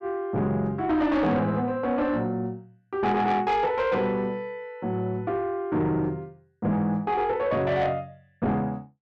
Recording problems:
distortion; soft clipping, signal-to-distortion ratio 11 dB

